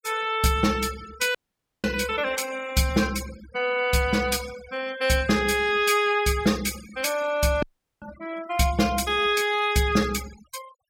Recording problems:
noise reduction artefacts; signal-to-artefact ratio 17 dB
audio cutting out; at 1.5 s and at 7.5 s

